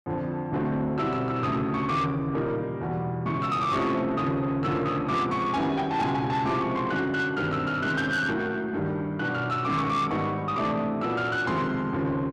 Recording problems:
distorted audio; soft clipping, signal-to-distortion ratio 11 dB

